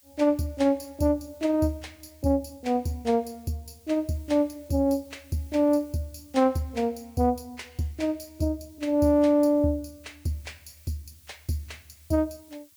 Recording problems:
background hiss; slope +3 dB per octave, SNR 29 dB

